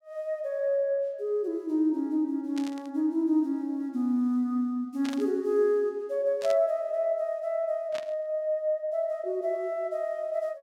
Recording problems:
static burst; 4 times, first at 2.5 s; peak -8 dB vs average level

